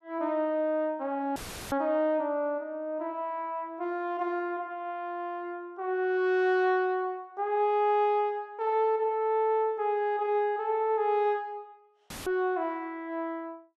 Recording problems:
dropout; at 1.5 s and at 12 s; filled with static

